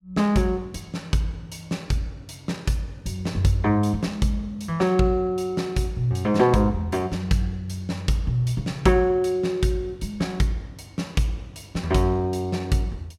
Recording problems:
none

